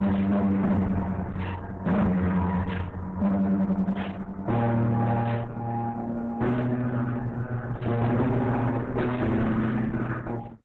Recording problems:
lossy compression; Opus, then Opus, log-spectral distance 3 dB
distortion; soft clipping, signal-to-distortion ratio 7 dB

